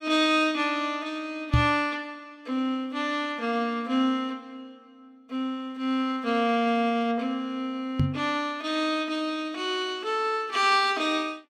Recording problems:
knock on the microphone; at 1.5 s and at 8 s; peak +7 dB vs average level

